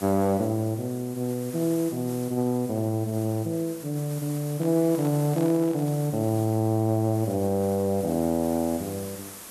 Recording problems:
hiss; slope -2 dB per octave, SNR 16 dB
handling noise; from 4.5 to 6 s; peak -10 dB vs average level

